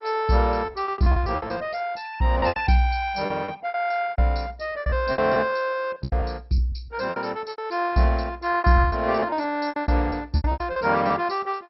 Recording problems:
codec artefacts; MP2, log-spectral distance 4 dB, nothing above 5.5 kHz
packet loss; 17% of the sound replaced, filled with repeated pitch periods

